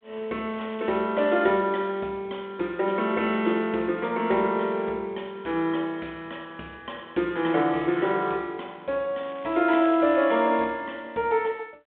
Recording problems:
telephone audio; 260 Hz to 3.6 kHz, G.726
crackling; at 0.5 s and from 9 to 10 s; loose cable, SNR 24 dB

